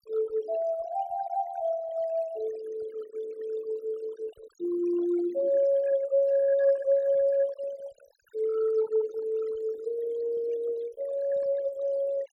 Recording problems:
denoising artefacts; signal-to-artefact ratio 18 dB

